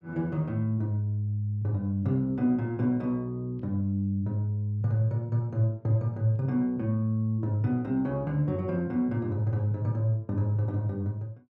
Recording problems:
none

